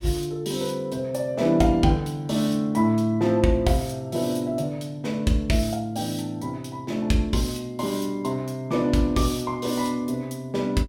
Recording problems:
none

